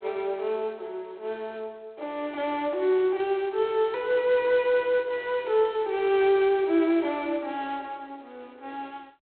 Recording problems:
phone line; 300 Hz to 3.9 kHz, G.726

